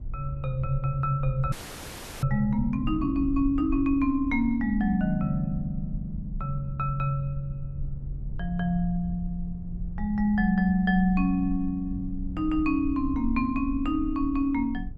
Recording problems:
low-frequency rumble; below 70 Hz, SNR 11 dB
frozen audio; at 1.5 s for 0.5 s

